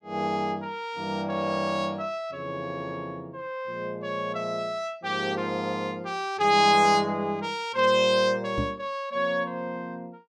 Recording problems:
knock on the microphone; at 8.5 s; peak 0 dB vs average level

